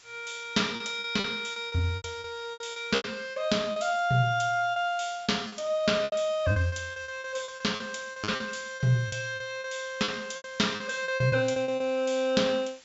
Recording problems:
low-pass filter; nothing above 8 kHz
background hiss; slope +2 dB per octave, SNR 23 dB
packet loss; 14% of the sound replaced, filled with repeated pitch periods

